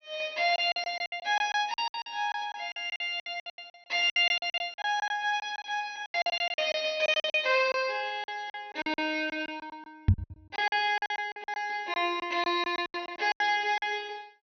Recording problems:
treble missing; nothing above 6.1 kHz
packet loss; 17% of the sound replaced, filled with silence
microphone thump; at 10 s; peak +10 dB vs average level

